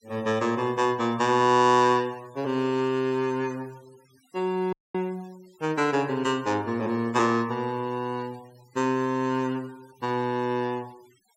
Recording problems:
denoising artefacts; signal-to-artefact ratio 27 dB
dropout; at 4.5 s

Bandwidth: 16 kHz